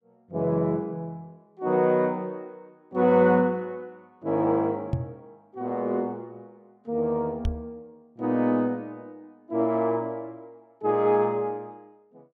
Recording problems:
microphone thump; at 5 s and at 7.5 s; peak +3 dB vs average level

